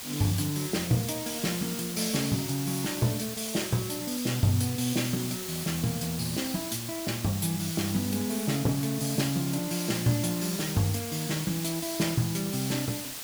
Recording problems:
background hiss; slope +1 dB per octave, SNR 6 dB

